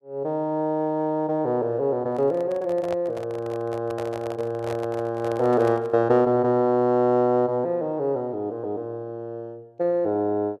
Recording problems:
microphone handling noise; from 2 to 6 s; peak -5 dB vs average level

